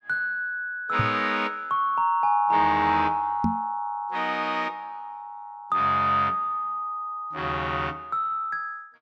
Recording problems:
microphone thump; at 1 s and at 3.5 s; peak +3 dB vs average level

